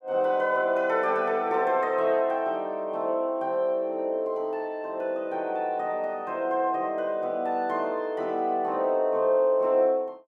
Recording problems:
none

